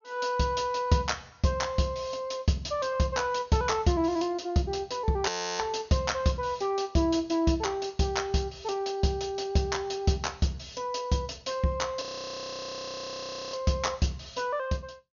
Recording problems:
treble missing; nothing above 6.7 kHz
frozen audio; at 5.5 s and at 12 s for 1.5 s

